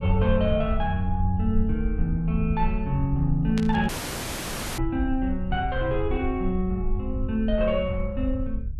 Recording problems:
rumble; below 70 Hz, SNR 5 dB
static burst; at 3.5 s; peak -4 dB vs average level
audio cutting out; at 4 s for 1 s

